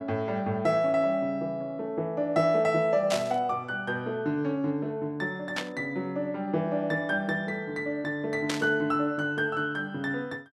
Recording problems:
burst of static; at 3 s, at 5.5 s and at 8.5 s; peak +1 dB vs average level

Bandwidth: 13 kHz